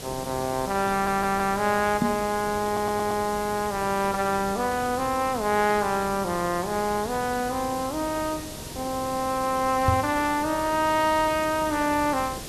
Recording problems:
hiss; SNR 11 dB
stutter; at 1 s and at 2.5 s
microphone bump; at 2 s and at 10 s; peak +5 dB vs average level

